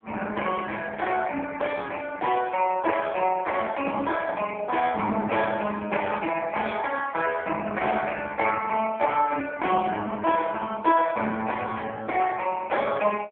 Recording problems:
telephone audio; 240 Hz to 3 kHz, AMR-NB

